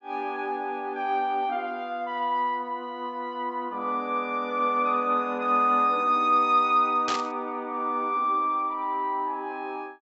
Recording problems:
treble cut off; nothing above 7.7 kHz
static burst; at 7 s; peak -2 dB vs average level

